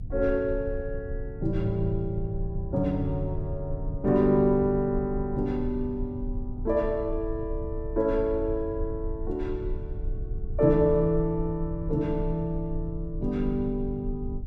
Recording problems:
low-frequency rumble; below 72 Hz, strongest tone 32 Hz, SNR 9 dB

